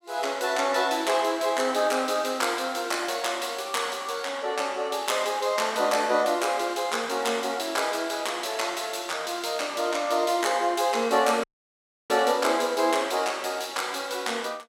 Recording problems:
audio cutting out; at 11 s for 0.5 s

